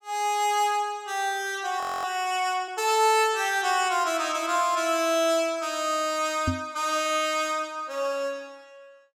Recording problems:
audio freezing; at 2 s
knock on the microphone; at 6.5 s; peak +2 dB vs average level

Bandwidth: 17 kHz